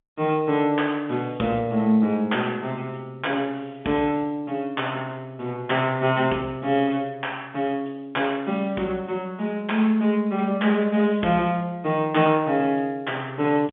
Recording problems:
phone line; 170 Hz to 3.5 kHz, G.711

